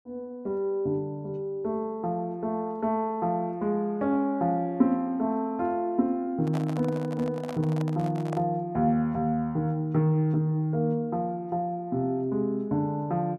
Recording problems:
handling noise; from 6.5 to 8.5 s; peak -5 dB vs average level

